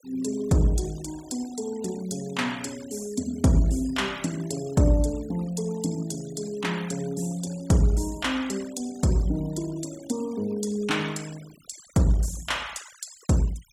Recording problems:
denoising artefacts; signal-to-artefact ratio 19 dB

